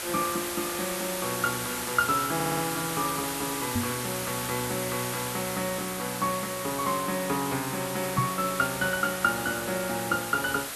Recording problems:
background hiss; slope -1 dB per octave, SNR 3 dB
audio stuttering; at 2.5 s
microphone thump; at 4 s and at 8 s; peak +5 dB vs average level

